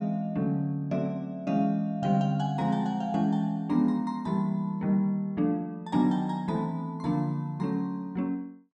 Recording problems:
none

